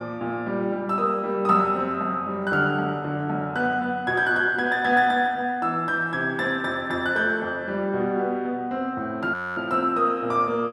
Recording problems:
audio freezing; at 9.5 s

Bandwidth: 13 kHz